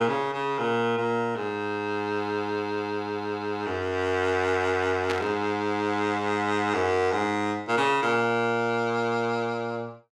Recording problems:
static burst; at 5 s; peak 0 dB vs average level

